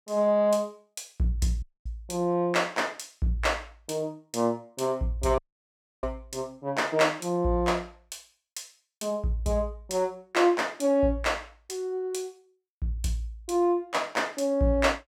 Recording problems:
dropout; at 1.5 s and at 5.5 s for 0.5 s

